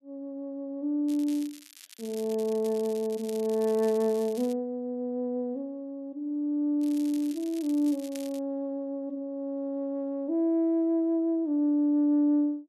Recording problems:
crackle; from 1 to 4.5 s and from 7 to 8.5 s; loose cable, SNR 19 dB

